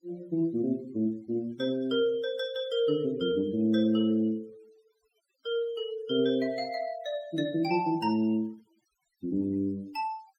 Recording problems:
noise reduction artefacts; signal-to-artefact ratio 26 dB

